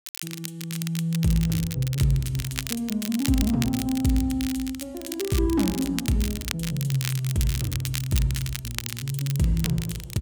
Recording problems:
crackling; vinyl, SNR 8 dB

